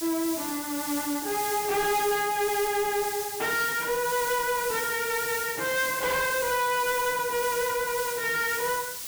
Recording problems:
distortion; soft clipping, signal-to-distortion ratio 10 dB
hiss; slope +2 dB per octave, SNR 5 dB

